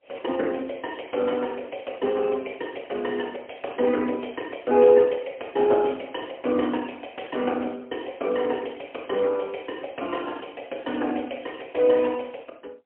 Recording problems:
phone line; 220 Hz to 3.2 kHz, AMR-NB, then MP3

